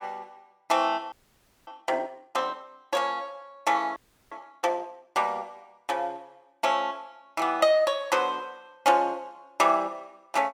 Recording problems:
frozen audio; at 1 s for 0.5 s and at 4 s

